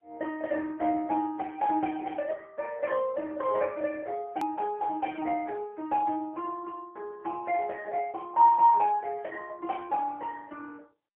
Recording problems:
telephone audio; 260 Hz to 3.1 kHz, AMR-NB, then MP3
click at an edit; at 4.5 s

